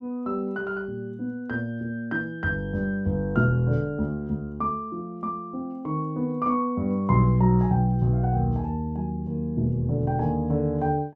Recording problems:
none

